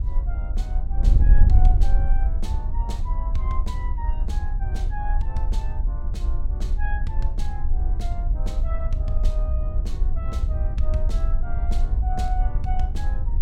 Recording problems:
wind on the microphone; below 58 Hz, SNR -11 dB

